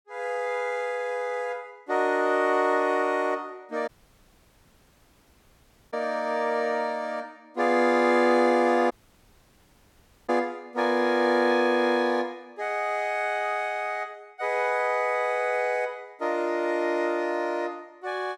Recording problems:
audio cutting out; at 4 s for 2 s and at 9 s for 1.5 s

